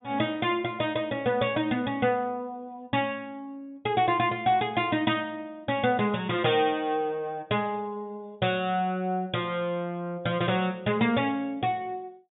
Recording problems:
treble missing; nothing above 4 kHz

